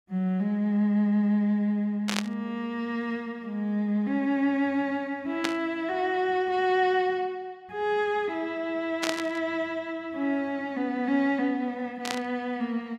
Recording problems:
static burst; 4 times, first at 2 s; peak +3 dB vs average level

